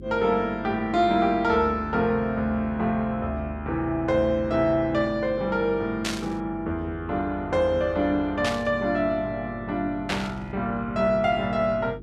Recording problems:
electrical hum; 50 Hz, harmonics up to 400 Hz, SNR 16 dB
static burst; at 6 s, at 8.5 s and at 10 s; peak +1 dB vs average level

